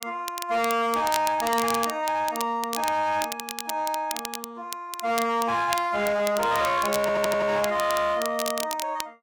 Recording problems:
distorted audio; hard clipping, uneven, signal-to-distortion ratio 12 dB
crackling; vinyl, SNR 10 dB
stutter; at 7 s

